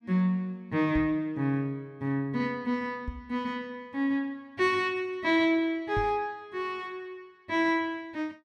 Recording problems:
knock on the microphone; at 1 s, at 3 s and at 6 s; peak -2 dB vs average level

